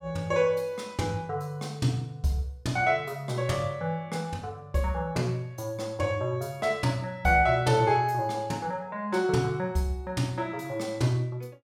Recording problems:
none

